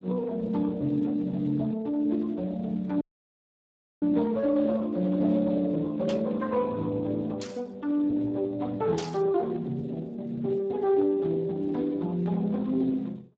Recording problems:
lossy compression; Speex, log-spectral distance 2 dB
dropout; at 3 s for 1 s
static burst; at 6 s, at 7.5 s and at 9 s; peak -5 dB vs average level

